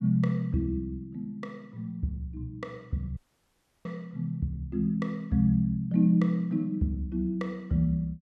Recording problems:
dropout; at 3 s for 0.5 s

